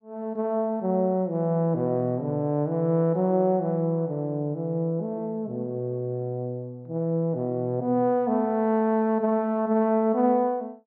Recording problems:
none

